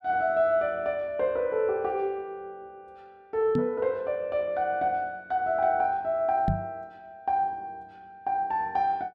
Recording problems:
microphone bump; at 3.5 s and at 6.5 s; peak +3 dB vs average level

